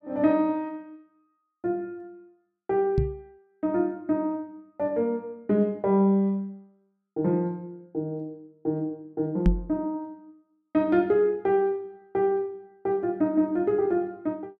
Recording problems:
knock on the microphone; at 3 s and at 9.5 s; peak +7 dB vs average level

